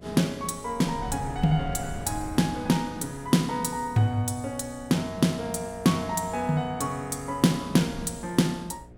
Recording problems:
hum; 60 Hz, harmonics up to 720 Hz, SNR 24 dB
wind noise; below 170 Hz, SNR 14 dB

